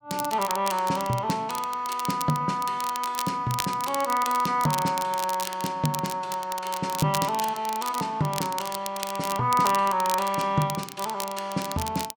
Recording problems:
crackling; vinyl, SNR 9 dB

